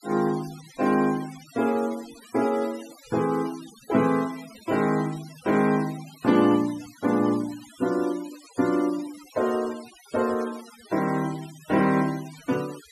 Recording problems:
noise reduction artefacts; signal-to-artefact ratio 18 dB

